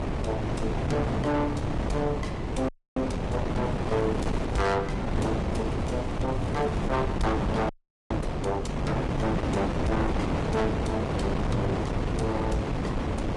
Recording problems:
codec artefacts; Vorbis, log-spectral distance 2 dB, nothing above 10.4 kHz
distorted audio; soft clipping, signal-to-distortion ratio 12 dB
wind noise; below 550 Hz, SNR -1 dB
frozen audio; at 2.5 s and at 7.5 s
crackling; from 3.5 to 5 s and from 5.5 to 7 s; loose cable, SNR 25 dB

